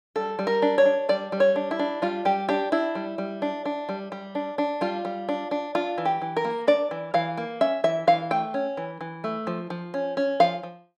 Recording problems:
none

